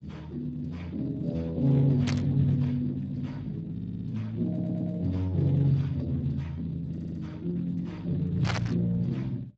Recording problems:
lossy compression; Speex, log-spectral distance 2 dB, nothing above 13.1 kHz
burst of static; at 2 s and at 8.5 s; peak +2 dB vs average level
stutter; at 3.5 s, at 4.5 s and at 7 s

